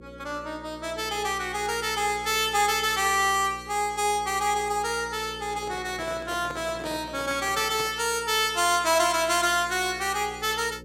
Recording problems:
hum; 60 Hz, harmonics up to 540 Hz, SNR 20 dB
handling noise; from 5.5 to 8 s; peak -9 dB vs average level

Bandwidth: 16 kHz